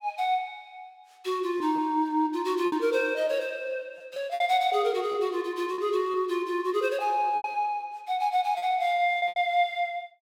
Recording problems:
packet loss; 6% of the sound replaced, filled with repeated pitch periods

